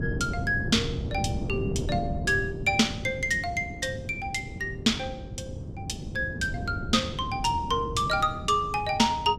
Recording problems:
wind on the microphone; below 240 Hz, SNR 7 dB

